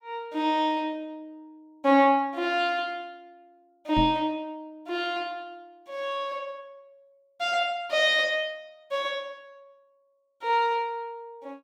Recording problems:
knock on the microphone; at 4 s; peak 0 dB vs average level

